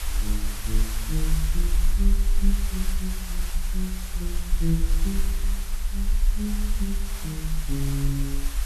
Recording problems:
hum; 60 Hz, harmonics up to 2 kHz, SNR 33 dB
hiss; SNR 4 dB
rumble; below 44 Hz, strongest tone 26 Hz, SNR -4 dB

